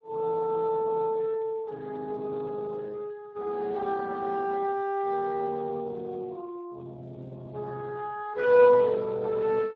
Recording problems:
lossy compression; Speex, log-spectral distance 2 dB

